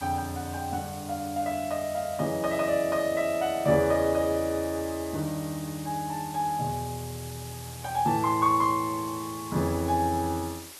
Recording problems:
hiss; slope 0 dB per octave, SNR 15 dB

